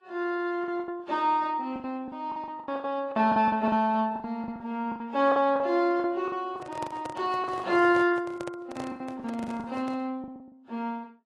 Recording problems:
lossy compression; AAC, then Vorbis, log-spectral distance 2 dB
lost packets; 16% of the sound replaced, filled with the last packet
handling noise; from 6.5 to 10 s; peak -6 dB vs average level

